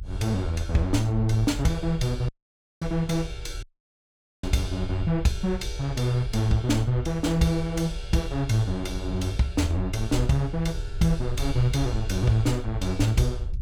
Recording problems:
rumble; below 66 Hz, SNR 10 dB
dropout; at 2.5 s for 0.5 s and at 3.5 s for 1 s

